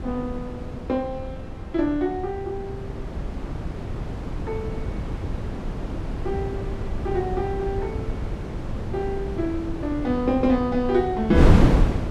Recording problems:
wind on the microphone; below 240 Hz, SNR 2 dB

